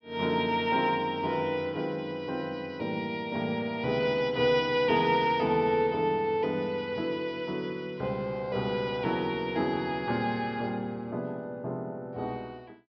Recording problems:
treble cut off; nothing above 5.5 kHz

